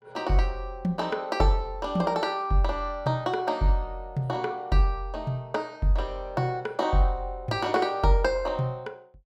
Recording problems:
none

